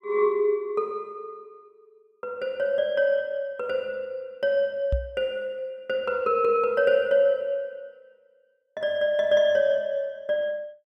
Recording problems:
knock on the microphone; at 5 s; peak +2 dB vs average level

